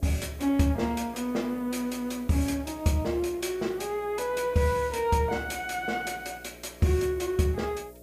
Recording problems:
hum; 60 Hz, harmonics up to 660 Hz, SNR 22 dB
hiss; SNR 27 dB

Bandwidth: 15 kHz